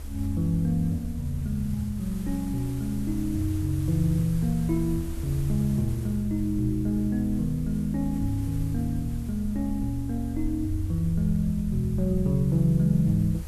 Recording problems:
hiss; slope -4 dB per octave, SNR 21 dB
low-frequency rumble; below 72 Hz, SNR 10 dB

